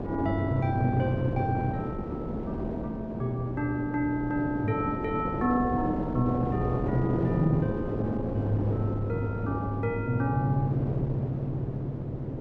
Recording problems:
wind noise; below 440 Hz, SNR 4 dB

